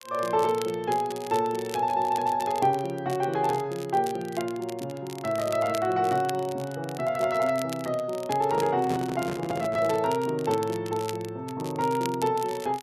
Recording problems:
crackle; vinyl, SNR 17 dB
handling noise; from 8.5 to 10 s; peak -3 dB vs average level

